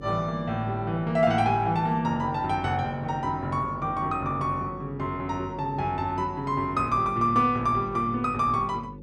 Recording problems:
electrical hum; 50 Hz, harmonics up to 550 Hz, SNR 15 dB

